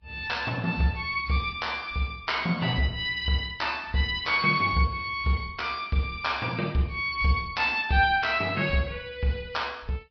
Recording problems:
treble missing; nothing above 5.5 kHz
lossy compression; Vorbis, log-spectral distance 3 dB

